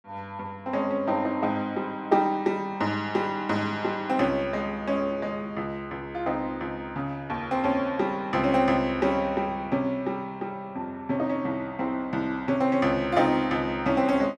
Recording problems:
none

